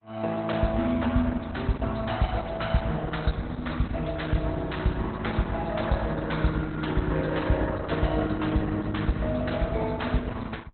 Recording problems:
lossy codec; Opus, log-spectral distance 5 dB, nothing above 4.1 kHz

